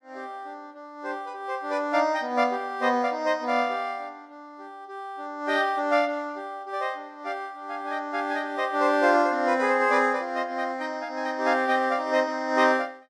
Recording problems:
none

